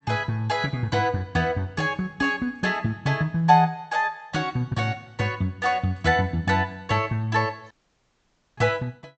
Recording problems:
low-pass filter; nothing above 8 kHz
audio cutting out; at 7.5 s for 1 s

